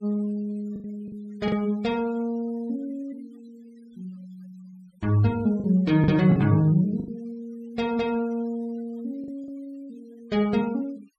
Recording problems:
noise reduction artefacts; signal-to-artefact ratio 25 dB
lost packets; 4% of the sound replaced, filled with the last packet

